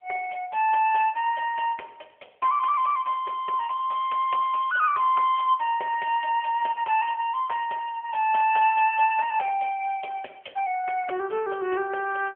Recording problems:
phone line; 320 Hz to 3.2 kHz, AMR-NB

